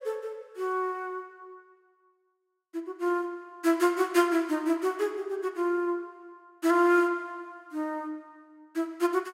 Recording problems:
none

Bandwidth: 16 kHz